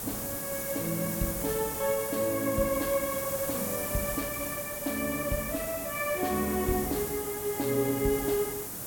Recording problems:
hiss; SNR 3 dB

